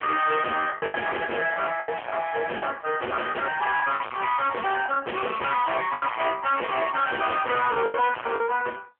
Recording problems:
phone line; 410 Hz to 3.2 kHz, AMR-NB
distortion; hard clipping, signal-to-distortion ratio 4 dB
packet loss; 8% of the sound replaced, filled with the last packet

